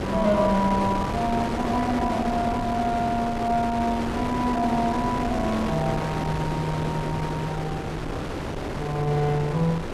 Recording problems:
wind noise; below 930 Hz, SNR 4 dB

